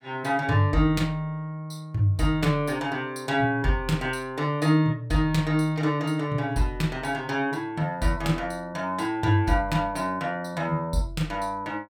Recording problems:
none

